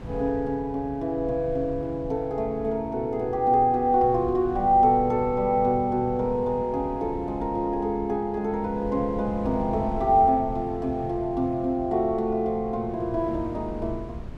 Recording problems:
wind noise; below 180 Hz, SNR 15 dB

